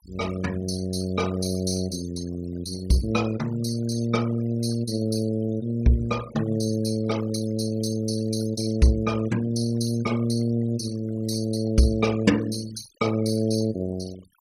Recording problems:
noise reduction artefacts; signal-to-artefact ratio 17 dB

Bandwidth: 16 kHz